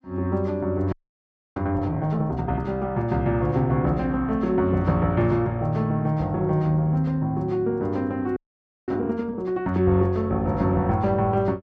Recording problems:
frozen audio; at 1 s for 0.5 s and at 8.5 s for 0.5 s

